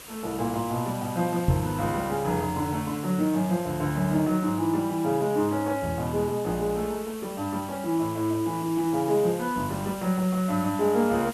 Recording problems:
background hiss; SNR 15 dB
microphone bump; at 1.5 s; peak +7 dB vs average level

